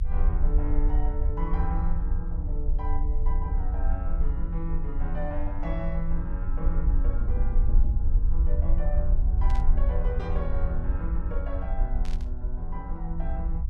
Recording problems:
low-frequency rumble; below 52 Hz, strongest tone 22 Hz, SNR -8 dB
burst of static; at 9.5 s and at 12 s; peak -6 dB vs average level

